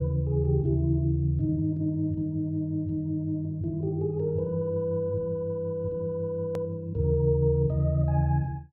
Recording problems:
click at an edit; at 6.5 s

